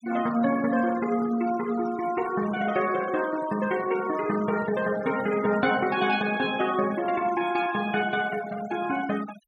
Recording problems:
noise reduction artefacts; signal-to-artefact ratio 16 dB

